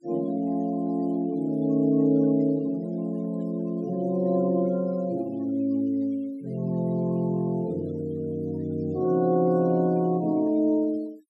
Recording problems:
denoising artefacts; signal-to-artefact ratio 28 dB

